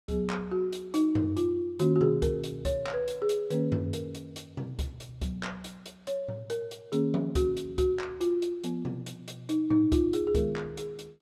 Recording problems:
none

